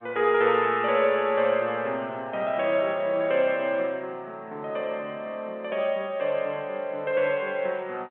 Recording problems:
phone line; 240 Hz to 3.5 kHz, G.711

